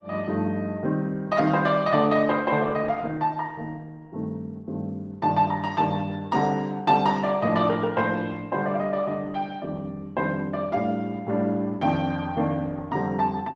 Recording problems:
codec artefacts; Opus, log-spectral distance 2 dB

